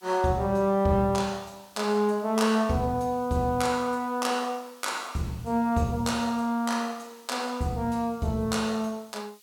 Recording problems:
background hiss; SNR 27 dB

